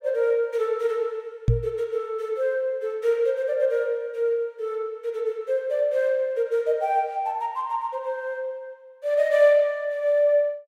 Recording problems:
microphone thump; at 1.5 s; peak +8 dB vs average level

